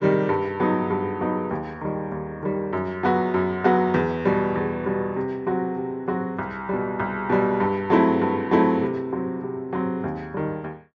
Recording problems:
treble cut off; nothing above 8 kHz

